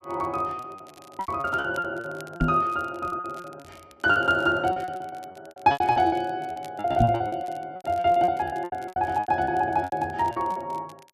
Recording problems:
crackling; vinyl, SNR 28 dB
packet loss; 19% of the sound replaced, filled with repeated pitch periods
knock on the microphone; at 2.5 s and at 7 s; peak +5 dB vs average level

